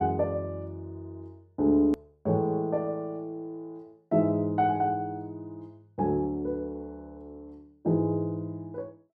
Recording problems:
click at an edit; at 2 s

